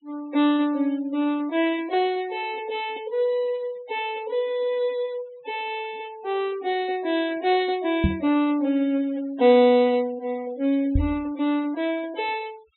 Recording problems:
treble cut off; nothing above 4 kHz
denoising artefacts; signal-to-artefact ratio 24 dB
microphone bump; at 8 s and at 11 s; peak +6 dB vs average level

